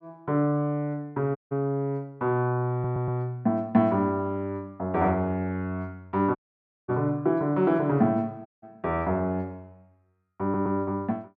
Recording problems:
dropout; at 1.5 s, at 6.5 s for 0.5 s and at 8.5 s
audio stuttering; at 2.5 s and at 10 s

